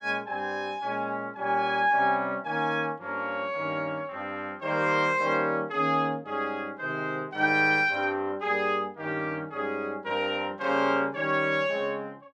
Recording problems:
none

